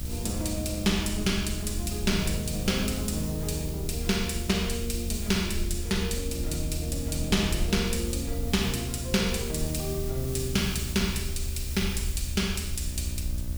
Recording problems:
hum; 60 Hz, harmonics up to 660 Hz, SNR 12 dB
background hiss; slope +3 dB per octave, SNR 12 dB
rumble; below 76 Hz, SNR 6 dB
crackle; from 1.5 to 4 s, from 6 to 7 s and from 11 to 13 s; loose cable, SNR 28 dB

